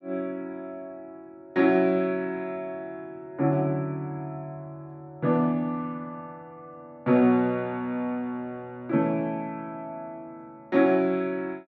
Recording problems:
none

